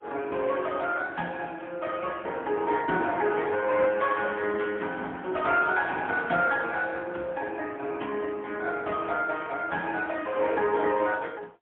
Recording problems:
telephone audio; 280 Hz to 3.7 kHz, AMR-NB, then MP3

